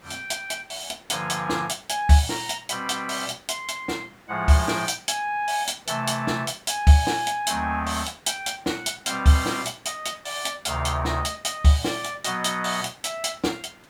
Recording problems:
background hiss; SNR 27 dB

